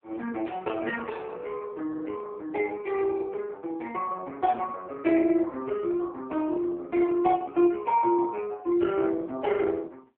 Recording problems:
telephone audio; 280 Hz to 3.5 kHz, AMR-NB

